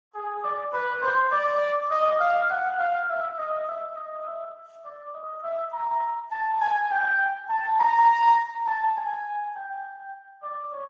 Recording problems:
lossy compression; Vorbis, then Speex, log-spectral distance 3 dB

